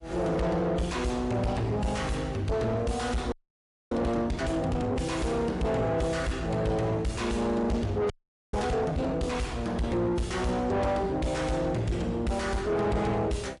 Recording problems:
lossy codec; MP3, log-spectral distance 2 dB, nothing above 11 kHz
distortion; soft clipping, signal-to-distortion ratio 7 dB
audio freezing; at 3.5 s for 0.5 s and at 8 s

